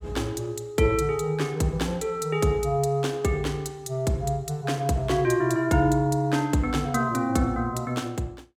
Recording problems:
none

